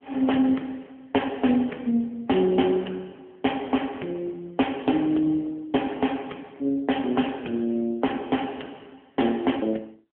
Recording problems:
telephone audio; 190 Hz to 3.3 kHz, AMR-NB

